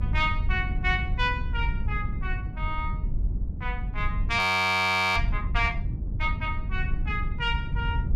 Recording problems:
rumble; below 88 Hz, SNR 3 dB
frozen audio; at 4.5 s for 1 s

